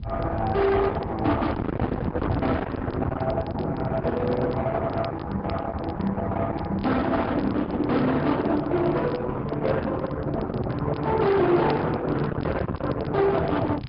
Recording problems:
treble cut off; nothing above 5.2 kHz
codec artefacts; Opus, then Opus, log-spectral distance 3 dB
distortion; soft clipping, signal-to-distortion ratio 7 dB
wind noise; below 340 Hz, SNR 5 dB
crackle; vinyl, SNR 27 dB

